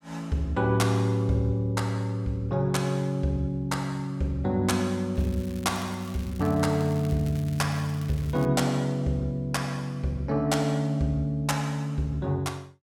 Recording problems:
crackle; from 5 to 8.5 s; loose cable, SNR 21 dB

